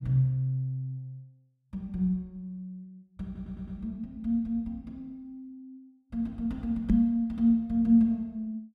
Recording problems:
audio stuttering; at 3.5 s
microphone thump; at 7 s; peak +8 dB vs average level

